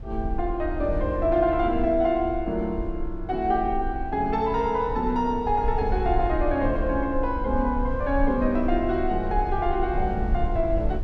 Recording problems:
rumble; below 60 Hz, SNR 8 dB

